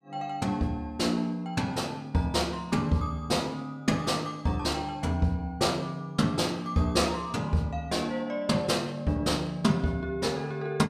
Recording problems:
none

